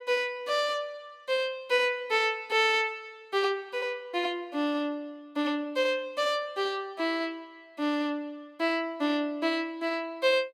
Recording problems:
none

